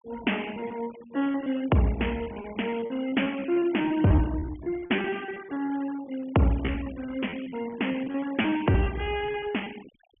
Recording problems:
treble cut off; nothing above 3.3 kHz
denoising artefacts; signal-to-artefact ratio 19 dB
packet loss; 16% of the sound replaced, filled with repeated pitch periods

